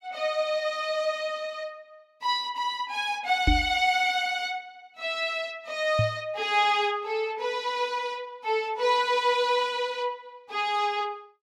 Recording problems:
knock on the microphone; at 3.5 s and at 6 s; peak +6 dB vs average level

